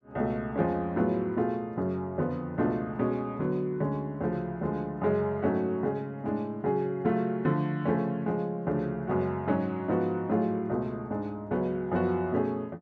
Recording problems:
none

